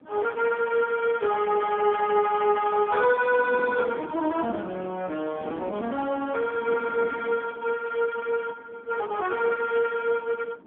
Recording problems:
phone line; 190 Hz to 2.8 kHz, AMR-NB
wind on the microphone; below 430 Hz, SNR 17 dB

